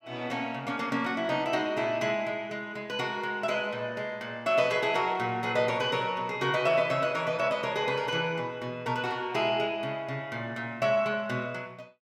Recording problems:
none

